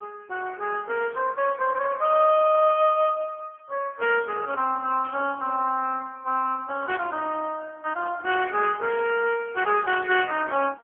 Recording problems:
phone line; 280 Hz to 3.3 kHz, AMR-NB
static burst; 4 times, first at 1 s; peak -16 dB vs average level

